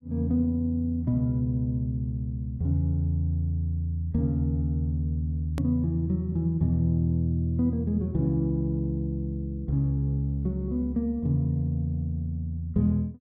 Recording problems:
hard cut with a click; at 5.5 s

